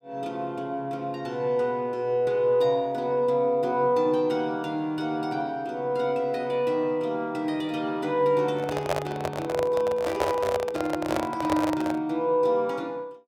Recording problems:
handling noise; from 8.5 to 12 s; peak +4 dB vs average level

